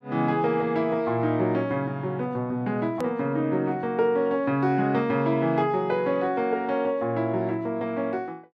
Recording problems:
hard cut with a click; at 3 s

